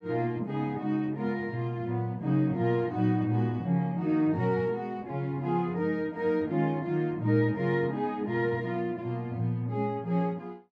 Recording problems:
none

